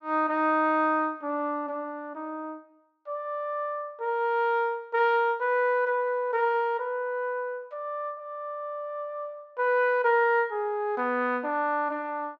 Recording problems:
none

